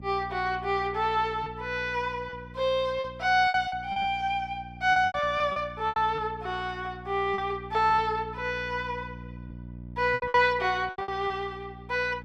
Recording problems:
hum; 60 Hz, harmonics up to 600 Hz, SNR 17 dB
lost packets; 8% of the sound replaced, filled with repeated pitch periods

